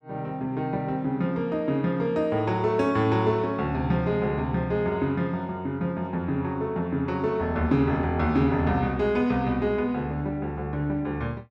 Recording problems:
none

